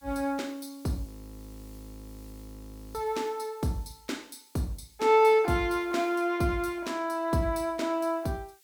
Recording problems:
background hiss; SNR 28 dB
frozen audio; at 1 s for 2 s

